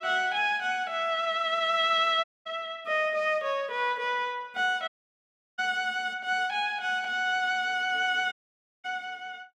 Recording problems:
dropout; at 2 s, at 5 s for 0.5 s and at 8.5 s for 0.5 s

